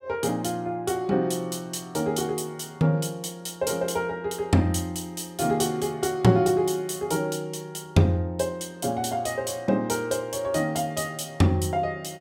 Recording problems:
none

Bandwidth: 16.5 kHz